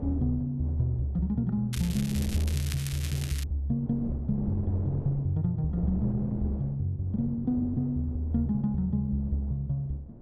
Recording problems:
wind on the microphone; below 290 Hz, SNR 12 dB
crackling; from 1.5 to 3.5 s; loose cable, SNR 11 dB

